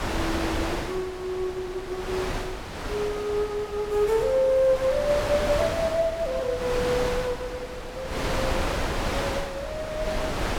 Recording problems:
wind on the microphone; below 1.6 kHz, SNR 4 dB

